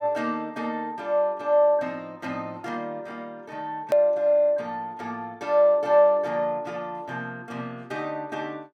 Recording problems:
click at an edit; at 4 s

